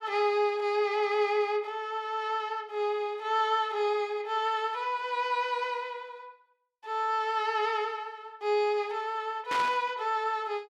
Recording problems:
burst of static; at 9.5 s; peak -2 dB vs average level

